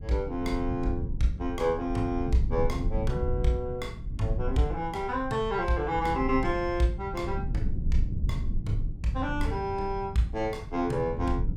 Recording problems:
low-frequency rumble; below 94 Hz, SNR 5 dB

